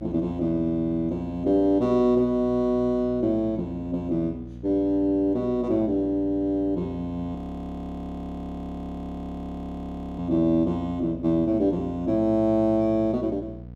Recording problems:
hum; 60 Hz, harmonics up to 720 Hz, SNR 16 dB
frozen audio; at 7.5 s for 3 s

